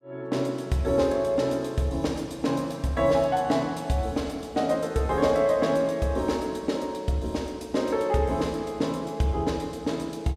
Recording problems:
none

